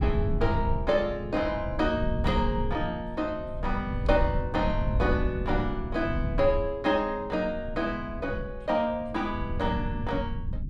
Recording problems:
low-frequency rumble; below 110 Hz, SNR 4 dB

